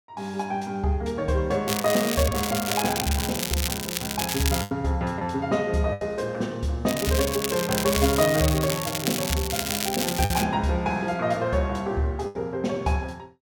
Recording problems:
packet loss; 3% of the sound replaced, filled with the last packet
crackle; from 1.5 to 4.5 s and from 7 to 10 s; loose cable, SNR 3 dB

